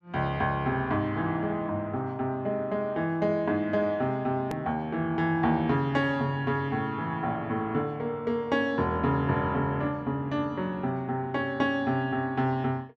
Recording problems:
hard cut with a click; at 4.5 s

